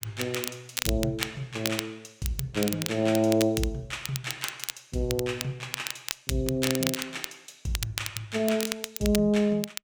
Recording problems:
crackling; vinyl, SNR 5 dB

